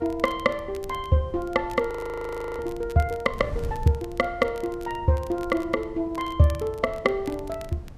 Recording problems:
wind noise; below 120 Hz, SNR 16 dB
crackle; vinyl, SNR 24 dB
frozen audio; at 2 s for 0.5 s

